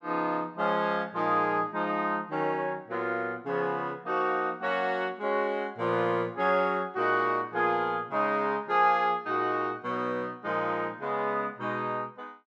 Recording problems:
none

